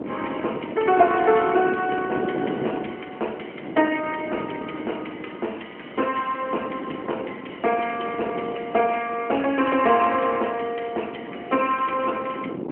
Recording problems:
phone line; 280 Hz to 3.1 kHz, AMR-NB
wind noise; below 490 Hz, SNR 10 dB

